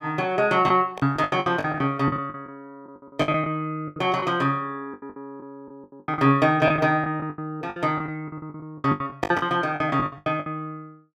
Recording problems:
lost packets; 19% of the sound replaced, filled with the last packet

